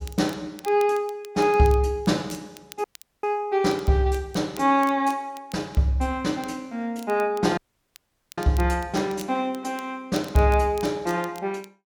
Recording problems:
crackling; vinyl, SNR 23 dB
dropout; at 3 s and at 7.5 s for 1 s

